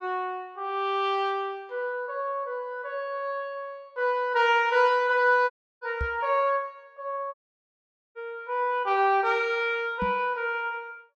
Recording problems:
dropout; at 5.5 s and at 7.5 s for 1 s
microphone thump; at 6 s and at 10 s; peak -2 dB vs average level

